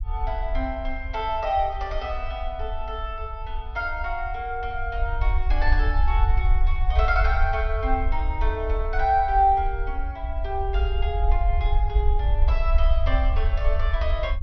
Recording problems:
treble cut off; nothing above 6 kHz
rumble; below 58 Hz, SNR -1 dB

